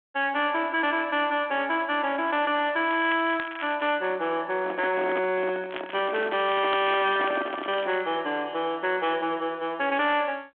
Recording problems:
telephone audio; 220 Hz to 3.5 kHz, G.726
distortion; soft clipping, signal-to-distortion ratio 10 dB
crackling; from 3 to 4 s and from 5.5 to 8 s; loose cable, SNR 15 dB
microphone handling noise; from 4.5 to 8 s; peak -2 dB vs average level

